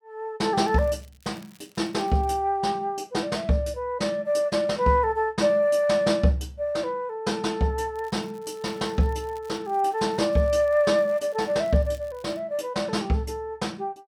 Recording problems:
crackle; from 0.5 to 2.5 s and from 8 to 12 s; loose cable, SNR 30 dB

